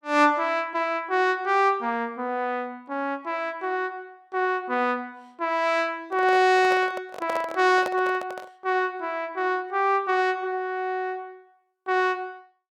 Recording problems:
microphone handling noise; from 6 to 8.5 s; peak -2 dB vs average level

